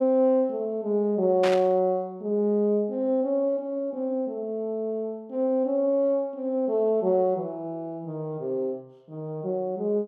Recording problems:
burst of static; at 1.5 s; peak -2 dB vs average level

